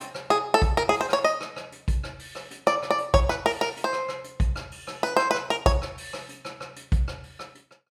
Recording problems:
none

